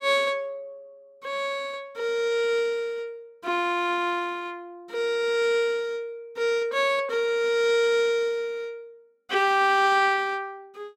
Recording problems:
none

